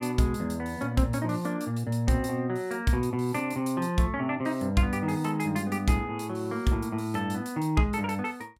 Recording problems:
none

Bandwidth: 16 kHz